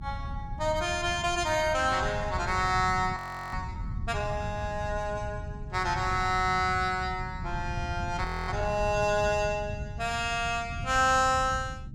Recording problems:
low-frequency rumble; below 140 Hz, SNR 9 dB
audio freezing; at 3 s and at 8.5 s

